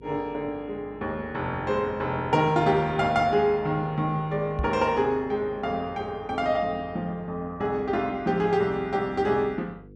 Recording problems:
hum; 50 Hz, harmonics up to 500 Hz, SNR 22 dB
microphone bump; at 4.5 s; peak +1 dB vs average level

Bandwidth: 12 kHz